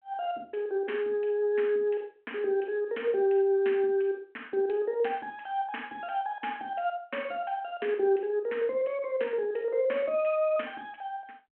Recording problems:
telephone audio; 240 Hz to 3.2 kHz, G.726

